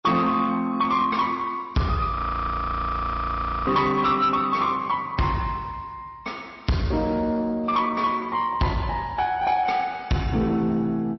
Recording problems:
codec artefacts; MP3, log-spectral distance 2 dB, nothing above 5.7 kHz
distortion; soft clipping, signal-to-distortion ratio 11 dB
frozen audio; at 2 s for 1.5 s

